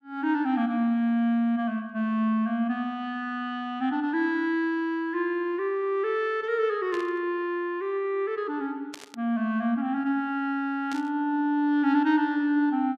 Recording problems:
static burst; at 7 s, at 9 s and at 11 s; peak -8 dB vs average level

